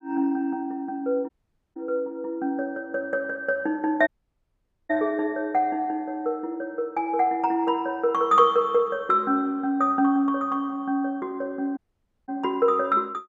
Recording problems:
dropout; at 1.5 s, at 4 s for 1 s and at 12 s for 0.5 s

